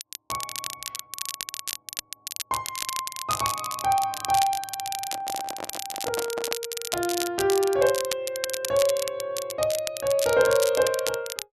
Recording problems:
crackling; vinyl, SNR 6 dB
handling noise; from 5 to 6.5 s; peak -3 dB vs average level

